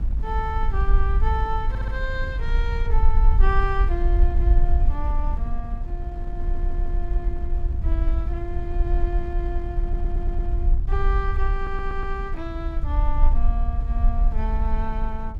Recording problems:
rumble; below 52 Hz, SNR -7 dB
wind on the microphone; below 160 Hz, SNR 6 dB
audio stuttering; 4 times, first at 1.5 s

